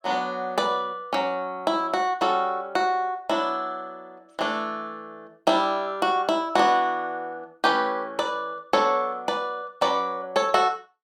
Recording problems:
none

